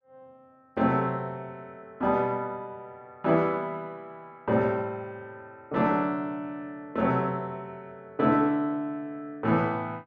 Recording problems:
none

